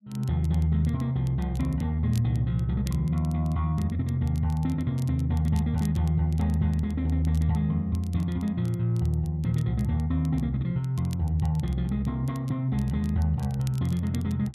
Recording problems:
crackle; vinyl, SNR 26 dB

